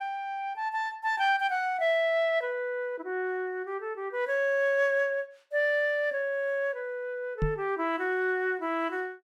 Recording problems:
knock on the microphone; at 7.5 s; peak +3 dB vs average level

